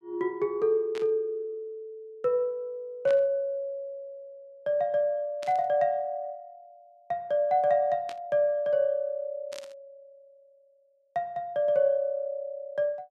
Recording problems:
burst of static; 5 times, first at 1 s; peak -9 dB vs average level

